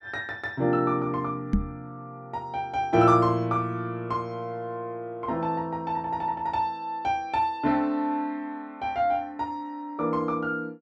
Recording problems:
microphone bump; at 1.5 s; peak +7 dB vs average level

